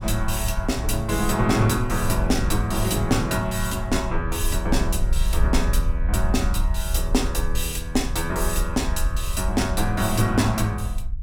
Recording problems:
low-frequency rumble; below 60 Hz, SNR 4 dB

